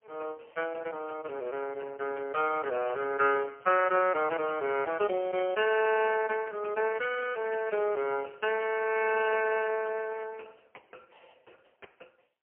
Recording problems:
phone line; 340 Hz to 2.9 kHz, AMR-NB, then MP3

